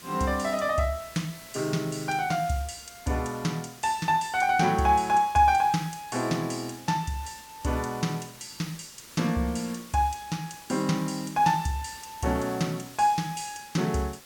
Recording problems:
background hiss; slope -1 dB per octave, SNR 18 dB

